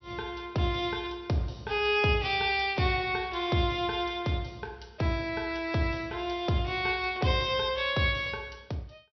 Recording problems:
treble cut off; nothing above 5.8 kHz

